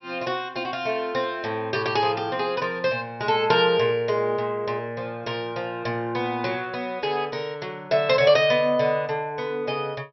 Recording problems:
low-pass filter; nothing above 5.7 kHz

